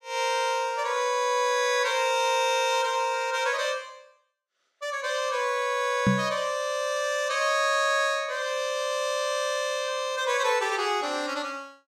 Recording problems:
microphone thump; at 6 s; peak +6 dB vs average level

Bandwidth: 16.5 kHz